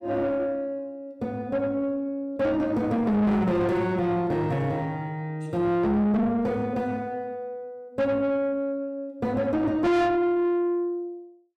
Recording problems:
distorted audio; soft clipping, signal-to-distortion ratio 7 dB

